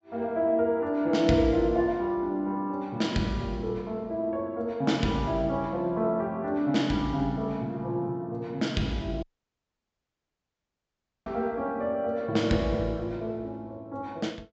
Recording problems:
treble cut off; nothing above 8 kHz
audio cutting out; at 9 s for 2 s

